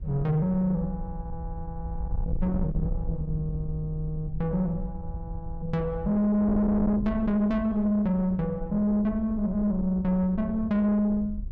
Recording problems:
distortion; soft clipping, signal-to-distortion ratio 10 dB
wind noise; below 100 Hz, SNR 10 dB

